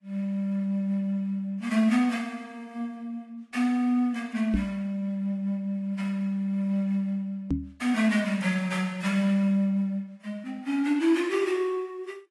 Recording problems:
lossy compression; AAC, log-spectral distance 2 dB, nothing above 11.6 kHz
knock on the microphone; at 4.5 s and at 7.5 s; peak +4 dB vs average level

